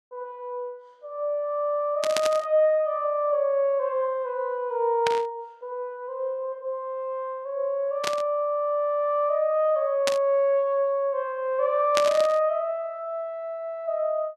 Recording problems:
burst of static; 5 times, first at 2 s; peak +3 dB vs average level

